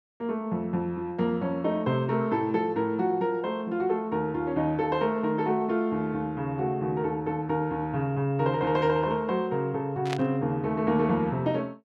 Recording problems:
static burst; at 10 s; peak -3 dB vs average level

